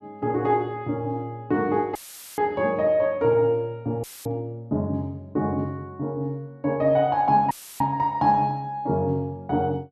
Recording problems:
dropout; at 2 s, at 4 s and at 7.5 s; filled with static

